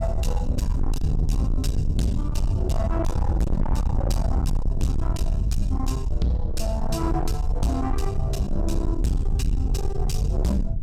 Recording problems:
distortion; soft clipping, signal-to-distortion ratio 6 dB
rumble; below 88 Hz, SNR -2 dB

